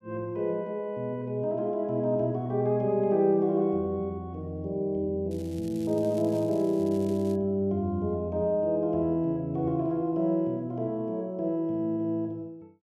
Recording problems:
crackle; from 5.5 to 7.5 s; loose cable, SNR 24 dB

